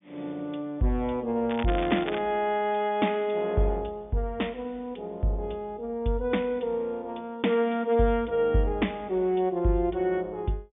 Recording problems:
treble missing; nothing above 3.5 kHz
crackling; at 1.5 s; loose cable, SNR 11 dB

